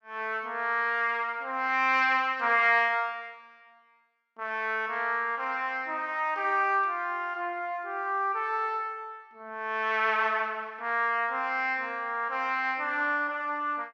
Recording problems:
none

